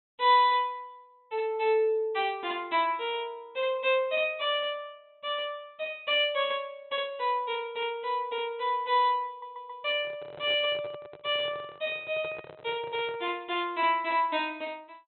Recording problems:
treble cut off; nothing above 4 kHz
audio stuttering; at 9.5 s
handling noise; from 10 to 13 s; peak -11 dB vs average level

